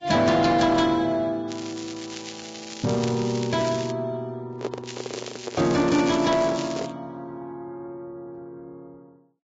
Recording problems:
lossy compression; Vorbis, log-spectral distance 6 dB, nothing above 7.3 kHz
distortion; soft clipping, signal-to-distortion ratio 12 dB
crackle; from 1.5 to 4 s and from 5 to 7 s; loose cable, SNR 14 dB
microphone handling noise; from 4.5 to 7 s; peak -1 dB vs average level

